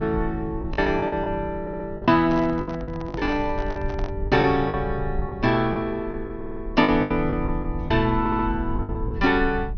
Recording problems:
treble cut off; nothing above 6.3 kHz
low-frequency rumble; below 86 Hz, SNR 10 dB
packet loss; 11% of the sound replaced, filled with the last packet
audio stuttering; at 1.5 s, at 6.5 s and at 8 s
handling noise; from 2 to 4 s; peak -7 dB vs average level

